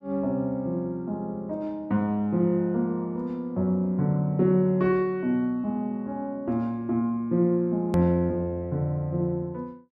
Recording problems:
edit click; at 8 s

